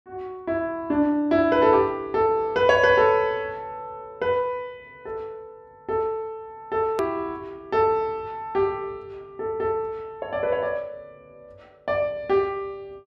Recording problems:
click at an edit; at 7 s

